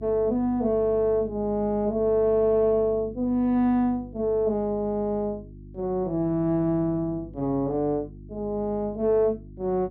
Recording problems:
hum; 50 Hz, harmonics up to 350 Hz, SNR 18 dB

